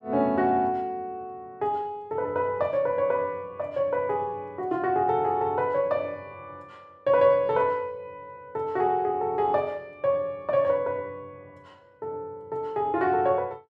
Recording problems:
none

